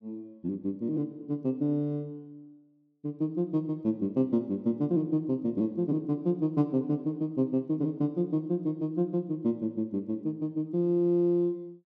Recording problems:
none

